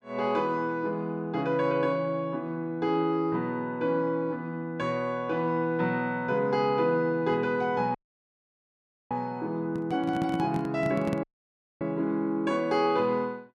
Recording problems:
dropout; at 8 s for 1 s and at 11 s for 0.5 s
microphone handling noise; from 9.5 to 11 s; peak +1 dB vs average level

